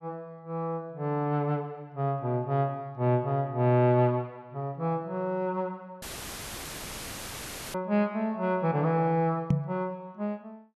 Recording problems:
audio cutting out; at 6 s for 1.5 s; filled with static
knock on the microphone; at 9.5 s; peak +7 dB vs average level

